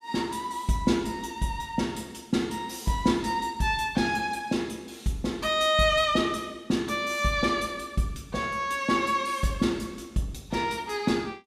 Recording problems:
none

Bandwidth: 15 kHz